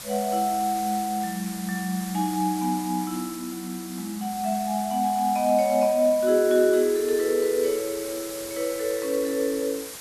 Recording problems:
hiss; slope 0 dB per octave, SNR 12 dB

